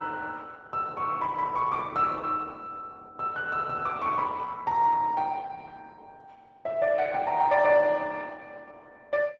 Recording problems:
lossy codec; Opus, log-spectral distance 3 dB

